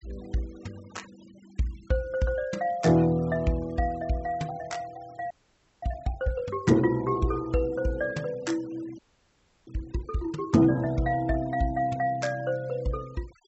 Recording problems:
low-pass filter; nothing above 7.8 kHz
noise reduction artefacts; signal-to-artefact ratio 24 dB
audio freezing; at 5.5 s for 0.5 s and at 9 s for 0.5 s

